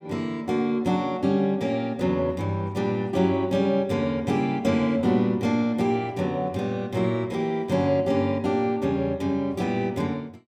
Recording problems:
none

